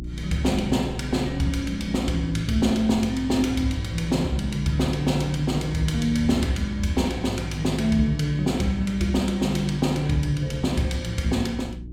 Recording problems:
hum; 60 Hz, harmonics up to 360 Hz, SNR 11 dB
wind on the microphone; below 200 Hz, SNR 20 dB

